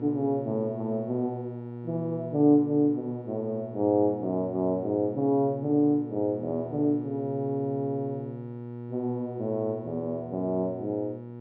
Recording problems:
hum; 60 Hz, harmonics up to 960 Hz, SNR 12 dB

